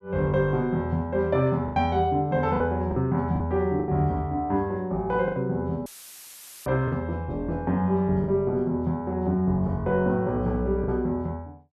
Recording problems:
lost packets; 5% of the sound replaced, filled with the last packet
dropout; at 6 s for 1 s; filled with static

